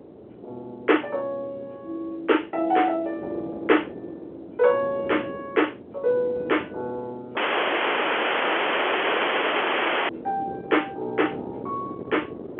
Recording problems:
telephone audio; 280 Hz to 3.3 kHz, G.711
wind noise; below 490 Hz, SNR 14 dB
audio cutting out; at 7.5 s for 2.5 s

